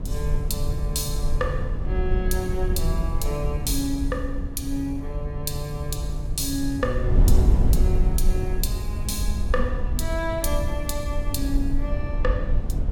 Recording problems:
wind on the microphone; below 68 Hz, SNR -3 dB

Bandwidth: 18 kHz